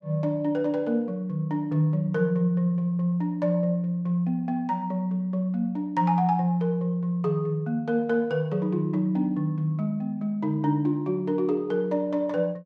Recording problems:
none

